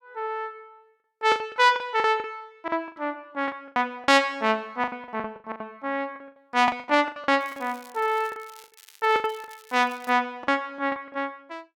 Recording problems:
packet loss; 15% of the sound replaced, filled with the last packet
crackling; from 7.5 to 10 s; loose cable, SNR 25 dB

